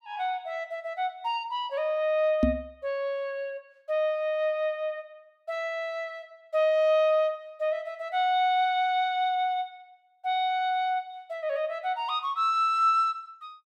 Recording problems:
microphone bump; at 2.5 s; peak +7 dB vs average level

